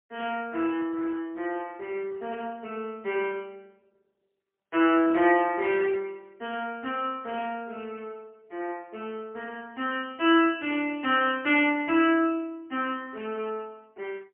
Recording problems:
phone line; 240 Hz to 3.2 kHz, AMR-NB, then MP3

